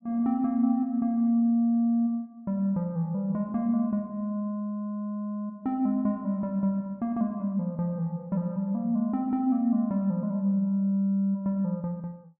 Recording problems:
none

